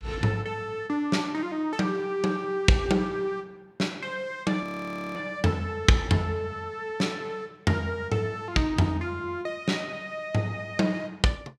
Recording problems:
frozen audio; at 4.5 s for 0.5 s

